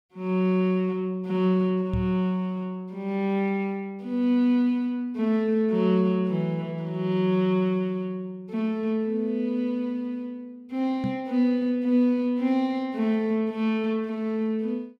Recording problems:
microphone bump; at 2 s and at 11 s; peak 0 dB vs average level

